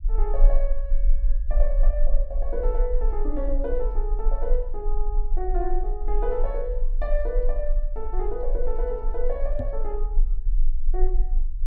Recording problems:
rumble; below 34 Hz, strongest tone 18 Hz, SNR -5 dB
knock on the microphone; at 9.5 s; peak +5 dB vs average level

